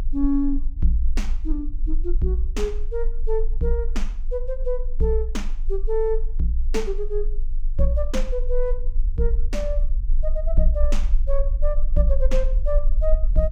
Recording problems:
low-frequency rumble; below 36 Hz, strongest tone 20 Hz, SNR 0 dB

